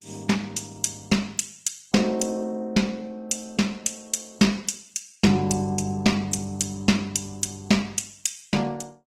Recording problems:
lossy codec; Opus, log-spectral distance 5 dB, nothing above 18.9 kHz

